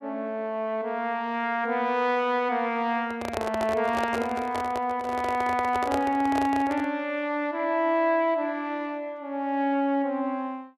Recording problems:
handling noise; from 3 to 7 s; peak +1 dB vs average level

